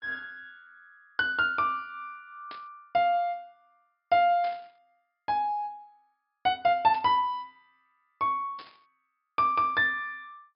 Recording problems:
treble cut off; nothing above 5.5 kHz
static burst; 4 times, first at 2.5 s; peak -14 dB vs average level

